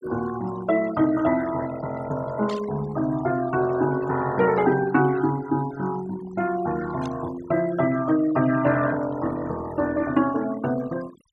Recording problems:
denoising artefacts; signal-to-artefact ratio 16 dB
static burst; at 2.5 s and at 7 s; peak -12 dB vs average level

